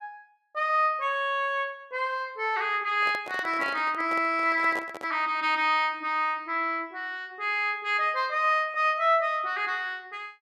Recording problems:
handling noise; from 3 to 5 s; peak -6 dB vs average level

